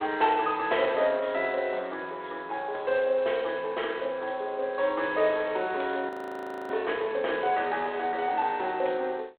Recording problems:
telephone audio; 340 Hz to 3.5 kHz, G.726
frozen audio; at 6 s for 0.5 s

